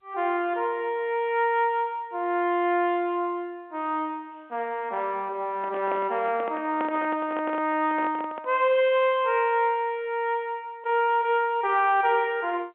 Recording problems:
telephone audio; 260 Hz to 3.4 kHz, G.711
microphone handling noise; from 5.5 to 8.5 s; peak -4 dB vs average level

